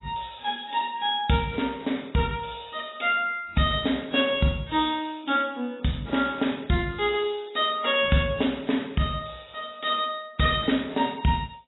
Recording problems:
codec artefacts; AAC, log-spectral distance 7 dB, nothing above 3.5 kHz

